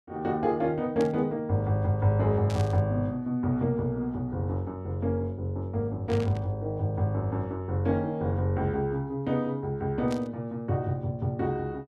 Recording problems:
burst of static; 4 times, first at 1 s; peak -8 dB vs average level

